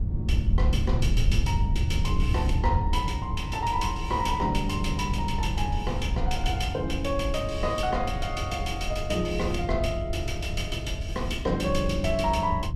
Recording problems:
wind noise; below 98 Hz, SNR 1 dB

